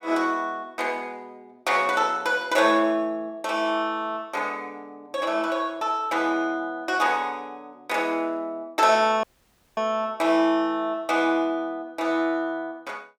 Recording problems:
audio cutting out; at 9 s for 0.5 s

